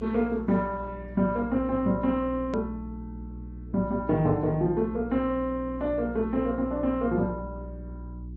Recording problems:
low-pass filter; nothing above 7.8 kHz
lossy codec; Opus, then AAC, log-spectral distance 2 dB
hum; 60 Hz, harmonics up to 360 Hz, SNR 13 dB
edit click; at 2.5 s

